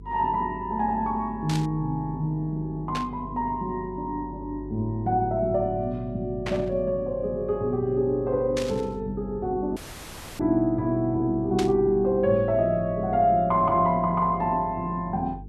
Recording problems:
hum; 50 Hz, harmonics up to 450 Hz, SNR 17 dB
static burst; 5 times, first at 1.5 s; peak -3 dB vs average level
dropout; at 10 s for 0.5 s

